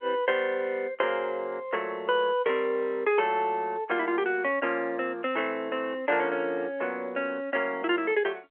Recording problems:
telephone audio; 340 Hz to 3.3 kHz, G.711

